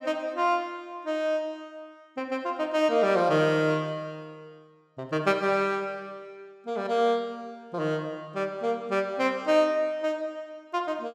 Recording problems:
none

